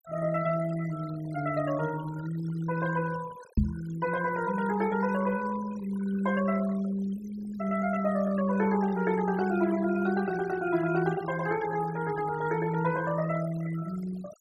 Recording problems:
noise reduction artefacts; signal-to-artefact ratio 16 dB
knock on the microphone; at 3.5 s; peak +7 dB vs average level

